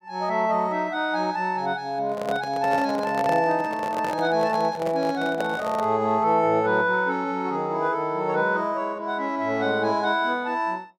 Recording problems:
microphone handling noise; from 2 to 6 s; peak -1 dB vs average level

